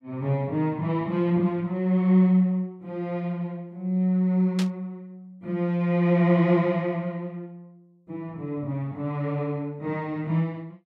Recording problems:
static burst; at 4.5 s; peak -4 dB vs average level

